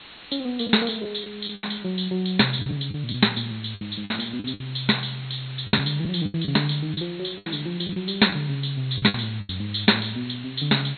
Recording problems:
low-pass filter; nothing above 4.3 kHz
hiss; SNR 17 dB
lost packets; 10% of the sound replaced, filled with the last packet

